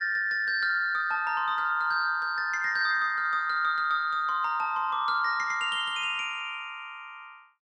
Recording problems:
none

